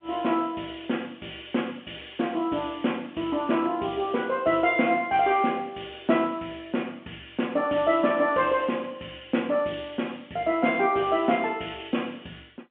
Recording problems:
telephone audio; 190 Hz to 3.4 kHz, G.711

